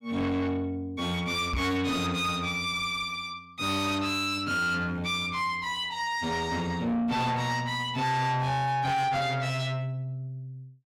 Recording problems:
distorted audio; soft clipping, signal-to-distortion ratio 7 dB
microphone bump; at 1.5 s; peak +1 dB vs average level

